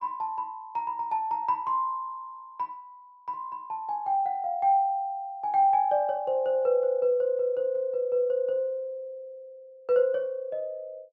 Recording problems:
none

